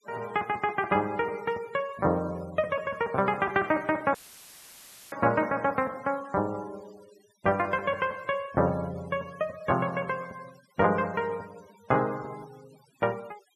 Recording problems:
denoising artefacts; signal-to-artefact ratio 23 dB
audio cutting out; at 4 s for 1 s; filled with static

